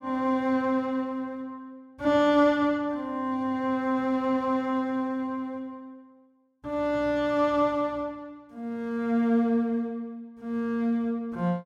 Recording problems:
none

